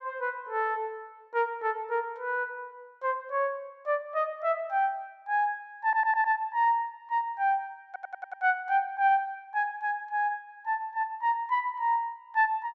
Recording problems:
stutter; at 6 s and at 8 s

